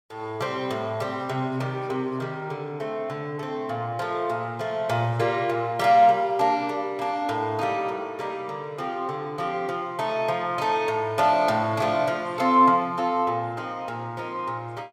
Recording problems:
none

